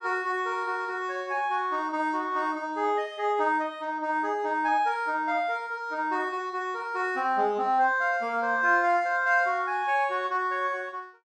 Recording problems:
none

